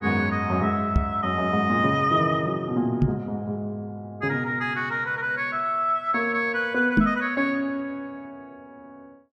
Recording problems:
knock on the microphone; at 1 s, at 3 s and at 7 s; peak +8 dB vs average level

